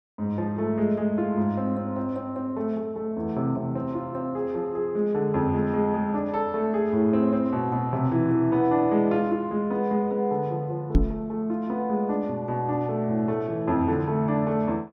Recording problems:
knock on the microphone; at 11 s; peak +9 dB vs average level

